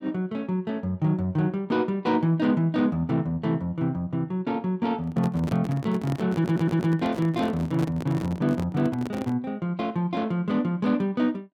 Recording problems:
handling noise; from 5 to 9.5 s; peak -3 dB vs average level
stutter; at 6.5 s

